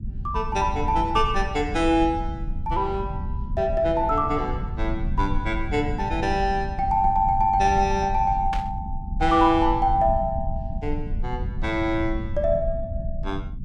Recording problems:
rumble; below 94 Hz, SNR 7 dB
static burst; at 8.5 s; peak -6 dB vs average level

